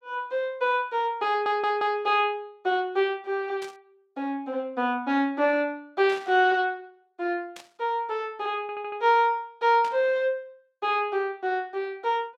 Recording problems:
audio stuttering; at 1.5 s and at 8.5 s
static burst; 4 times, first at 3.5 s; peak -11 dB vs average level

